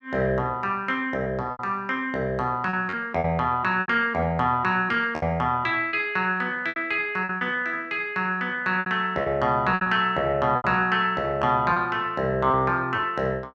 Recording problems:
lost packets; 8% of the sound replaced, filled with repeated pitch periods

